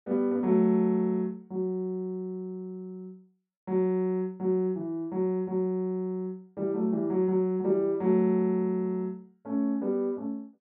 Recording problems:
none

